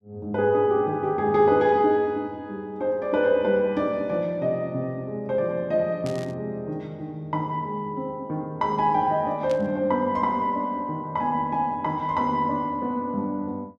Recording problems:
burst of static; at 6 s and at 9.5 s; peak -11 dB vs average level

